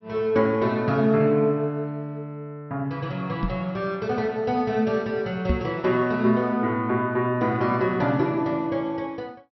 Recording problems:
low-pass filter; nothing above 5.7 kHz
microphone thump; at 3.5 s and at 5.5 s; peak +3 dB vs average level

